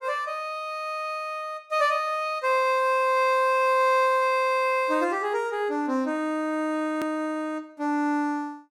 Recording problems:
click at an edit; at 7 s

